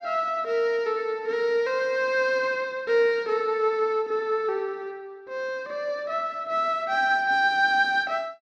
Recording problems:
none

